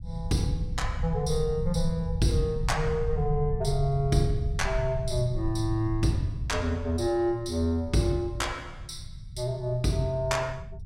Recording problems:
low-frequency rumble; below 110 Hz, SNR 7 dB

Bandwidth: 16 kHz